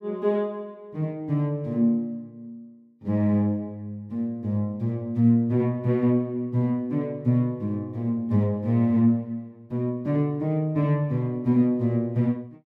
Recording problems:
none

